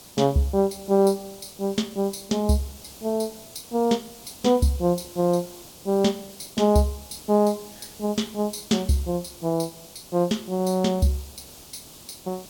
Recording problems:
background hiss; SNR 19 dB

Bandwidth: 17.5 kHz